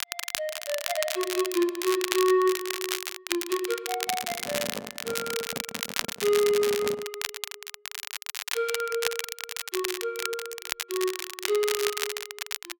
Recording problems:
crackle; vinyl, SNR 3 dB
microphone handling noise; from 4 to 7 s; peak -3 dB vs average level

